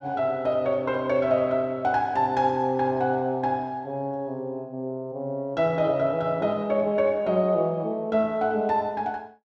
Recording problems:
none

